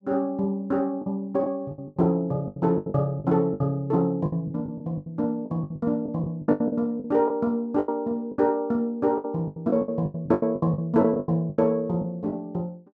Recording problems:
packet loss; 16% of the sound replaced, filled with the last packet

